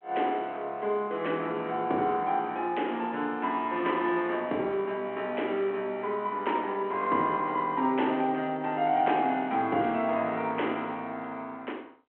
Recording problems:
phone line; 190 Hz to 3.3 kHz, G.726

